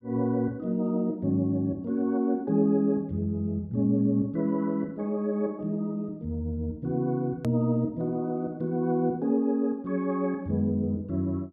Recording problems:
edit click; at 7.5 s

